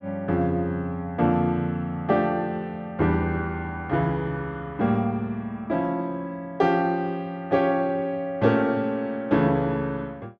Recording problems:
none

